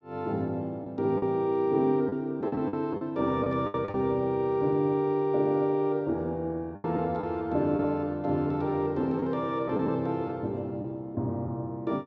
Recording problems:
packet loss; 5% of the sound replaced, filled with the last packet

